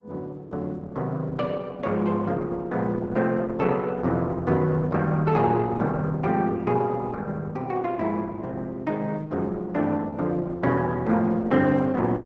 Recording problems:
codec artefacts; Opus, log-spectral distance 3 dB

